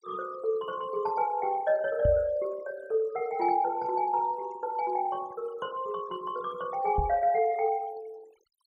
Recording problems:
denoising artefacts; signal-to-artefact ratio 23 dB
microphone thump; at 2 s and at 7 s; peak +2 dB vs average level

